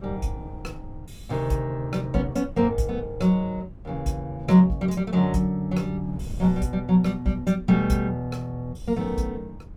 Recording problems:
wind on the microphone; below 130 Hz, SNR 17 dB

